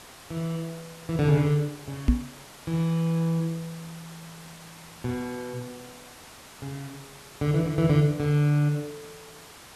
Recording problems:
hiss; slope -2 dB per octave, SNR 19 dB
microphone thump; at 2 s; peak +9 dB vs average level

